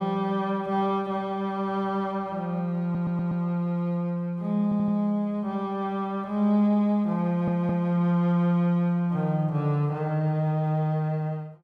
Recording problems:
stutter; at 3 s, at 4.5 s and at 7.5 s

